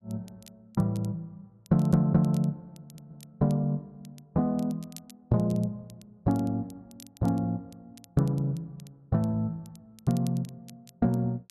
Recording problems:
crackle; vinyl, SNR 26 dB
stutter; at 1.5 s and at 3 s

